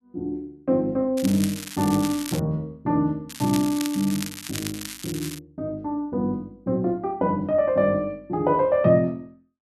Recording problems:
crackle; from 1 to 2.5 s and from 3.5 to 5.5 s; loose cable, SNR 10 dB

